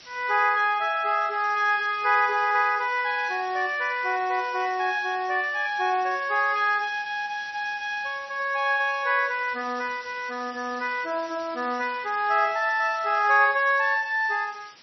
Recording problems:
lossy compression; MP3, log-spectral distance 10 dB, nothing above 5 kHz
hiss; slope +1 dB per octave, SNR 21 dB

